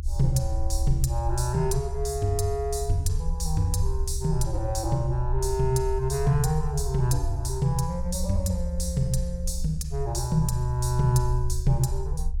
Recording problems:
low-frequency rumble; below 70 Hz, SNR 4 dB

